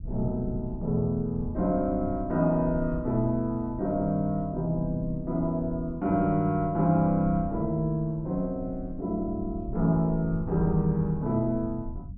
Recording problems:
rumble; below 110 Hz, SNR 13 dB

